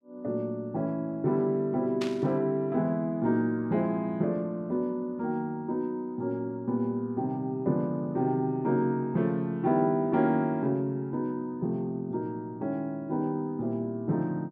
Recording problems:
burst of static; at 2 s; peak -4 dB vs average level

